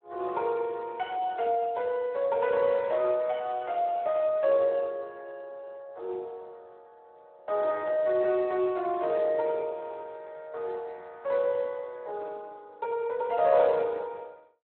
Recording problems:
telephone audio; 320 Hz to 3.7 kHz, Speex

